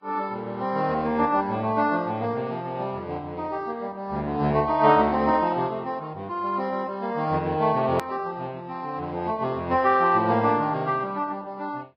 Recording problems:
lossy compression; Vorbis, then AAC, log-spectral distance 2 dB, nothing above 14.6 kHz
click at an edit; at 8 s

